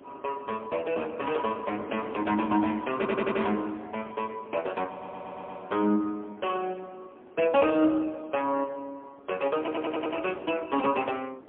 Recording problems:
phone line; 220 Hz to 3.3 kHz, AMR-NB, then MP3
wind noise; below 700 Hz, SNR 20 dB
audio stuttering; at 3 s, at 5 s and at 9.5 s

